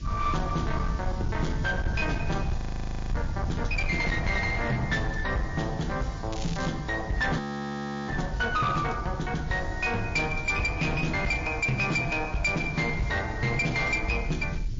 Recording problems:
codec artefacts; MP3, log-spectral distance 2 dB
distortion; hard clipping, signal-to-distortion ratio 11 dB
background hiss; slope +5 dB per octave, SNR 25 dB
low-frequency rumble; below 110 Hz, SNR 7 dB
audio freezing; at 2.5 s for 0.5 s and at 7.5 s for 0.5 s
crackle; at 6.5 s; loose cable, SNR 14 dB

